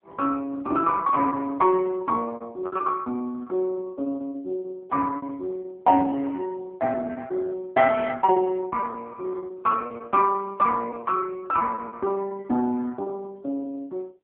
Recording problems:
telephone audio; 220 Hz to 2.6 kHz, AMR-NB
lost packets; 17% of the sound replaced, filled with repeated pitch periods

